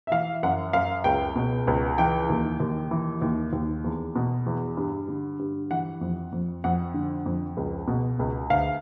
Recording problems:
none

